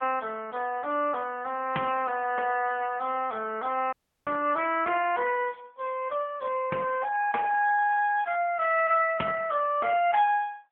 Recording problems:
phone line; 260 Hz to 3.1 kHz, AMR-NB
audio cutting out; at 4 s

